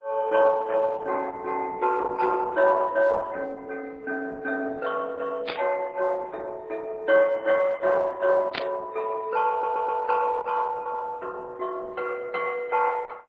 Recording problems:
lossy compression; MP3, then Opus, log-spectral distance 3 dB, nothing above 7.6 kHz
burst of static; at 5.5 s and at 8.5 s; peak 0 dB vs average level
audio stuttering; at 9.5 s

